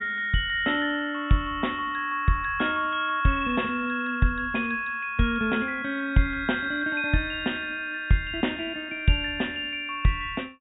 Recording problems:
treble missing; nothing above 4 kHz

